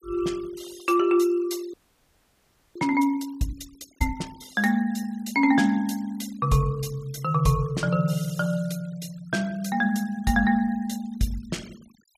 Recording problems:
noise reduction artefacts; signal-to-artefact ratio 24 dB
audio freezing; at 1.5 s for 1 s

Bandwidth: 15 kHz